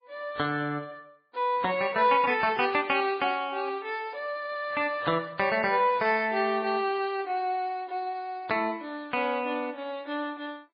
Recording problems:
lossy codec; MP3, log-spectral distance 2 dB, nothing above 4.5 kHz

